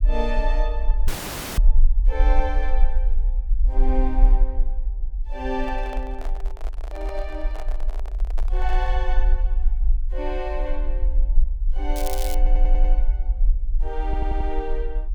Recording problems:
low-frequency rumble; below 40 Hz, SNR -6 dB
dropout; at 1 s for 0.5 s
handling noise; from 5.5 to 9 s; peak -4 dB vs average level
crackle; at 12 s; loose cable, SNR 4 dB
audio stuttering; at 12 s and at 14 s

